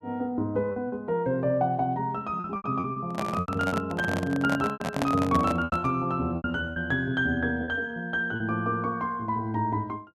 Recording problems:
lost packets; 8% of the sound replaced, filled with repeated pitch periods
handling noise; from 3 to 6 s; peak +3 dB vs average level

